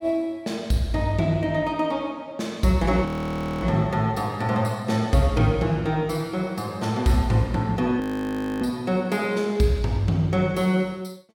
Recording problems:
audio freezing; at 3 s for 0.5 s and at 8 s for 0.5 s

